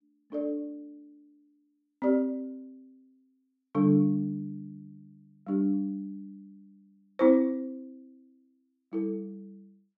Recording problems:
none

